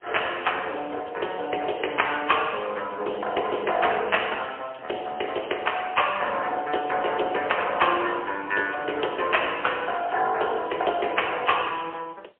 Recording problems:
telephone audio; 320 Hz to 3.6 kHz, AMR-NB, then MP3

